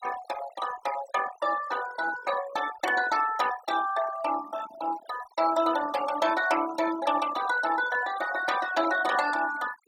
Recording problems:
noise reduction artefacts; signal-to-artefact ratio 12 dB

